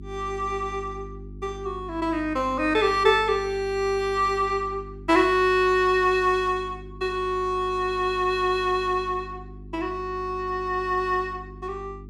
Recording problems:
hum; 50 Hz, harmonics up to 400 Hz, SNR 18 dB

